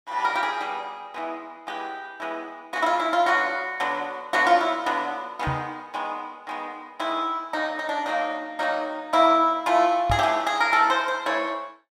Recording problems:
microphone thump; at 5.5 s and at 10 s; peak 0 dB vs average level

